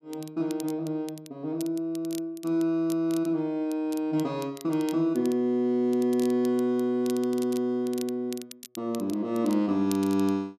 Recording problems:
crackle; vinyl, SNR 19 dB

